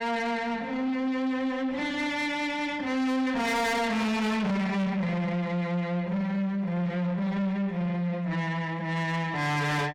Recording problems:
distortion; soft clipping, signal-to-distortion ratio 6 dB

